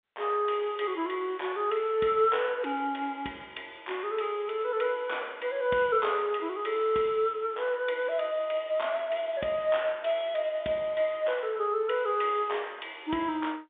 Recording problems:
phone line; 190 Hz to 3.7 kHz, G.711

